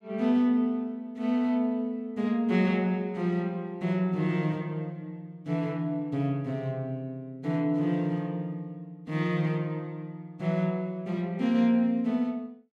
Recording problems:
none

